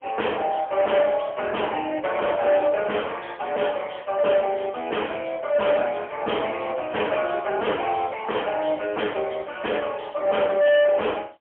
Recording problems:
phone line; 320 Hz to 3.2 kHz, AMR-NB, then MP3
distorted audio; hard clipping, uneven, signal-to-distortion ratio 5 dB

